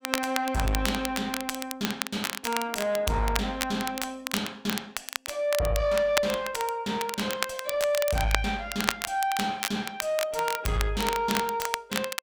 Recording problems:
distortion; soft clipping, signal-to-distortion ratio 10 dB
crackling; vinyl, SNR 4 dB

